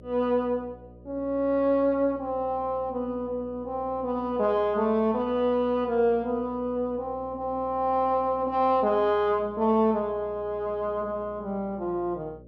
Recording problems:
hum; 60 Hz, harmonics up to 600 Hz, SNR 22 dB

